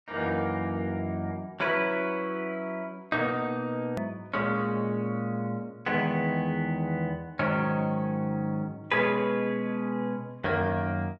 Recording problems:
click at an edit; at 4 s

